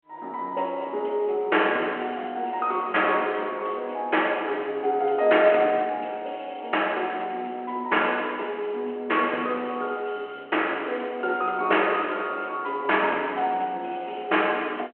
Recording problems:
phone line; 280 Hz to 3.2 kHz, G.726

